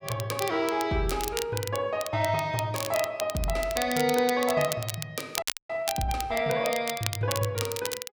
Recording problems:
crackle; vinyl, SNR 7 dB
audio freezing; at 5.5 s

